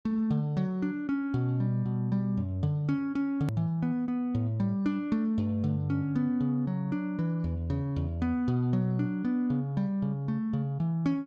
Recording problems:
edit click; at 3.5 s

